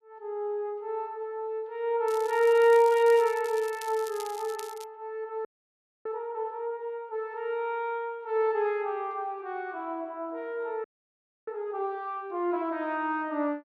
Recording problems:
crackle; from 2 to 5 s; loose cable, SNR 18 dB
frozen audio; at 5.5 s for 0.5 s and at 11 s for 0.5 s

